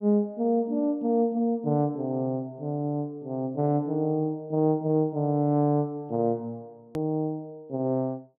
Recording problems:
click at an edit; at 7 s

